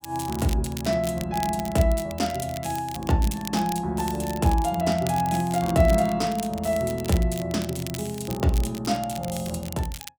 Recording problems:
crackling; vinyl, SNR 14 dB

